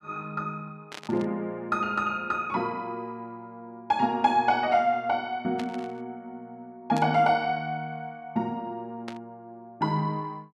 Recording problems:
burst of static; 4 times, first at 1 s; peak -7 dB vs average level

